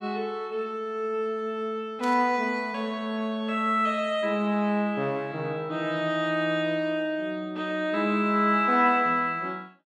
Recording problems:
burst of static; at 2 s; peak -11 dB vs average level

